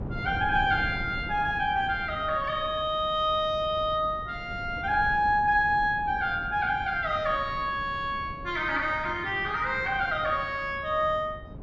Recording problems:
treble missing; nothing above 8 kHz
wind noise; below 260 Hz, SNR 14 dB

